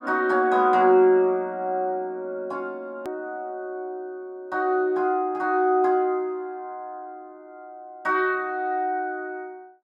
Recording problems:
edit click; at 3 s

